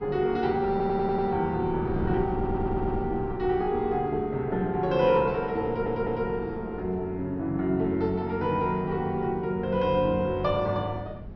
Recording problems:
treble missing; nothing above 5.9 kHz
wind on the microphone; below 220 Hz, SNR 13 dB
audio stuttering; at 0.5 s, at 2.5 s and at 5.5 s

